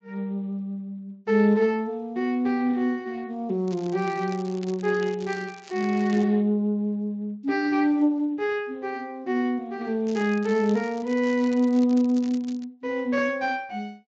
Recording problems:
lossy compression; Speex, log-spectral distance 2 dB
crackle; from 3.5 to 6 s and from 10 to 13 s; loose cable, SNR 21 dB

